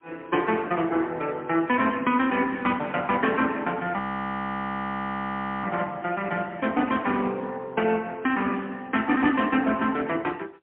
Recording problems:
telephone audio; 280 Hz to 3.2 kHz, AMR-NB, then MP3
frozen audio; at 4 s for 1.5 s

